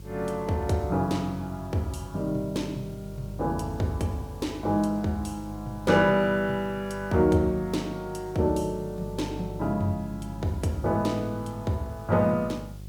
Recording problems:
electrical hum; 50 Hz, harmonics up to 550 Hz, SNR 14 dB
hiss; slope +3 dB per octave, SNR 28 dB

